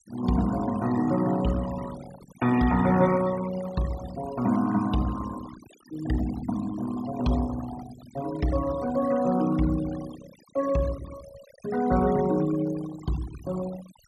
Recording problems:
noise reduction artefacts; signal-to-artefact ratio 16 dB

